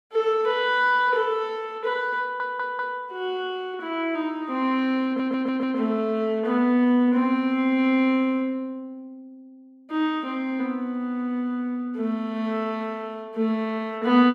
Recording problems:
stutter; at 2 s and at 5 s

